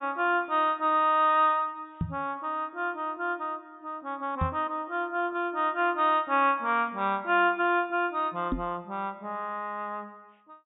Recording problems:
treble cut off; nothing above 4 kHz
microphone bump; at 2 s, at 4.5 s and at 8.5 s; peak +1 dB vs average level

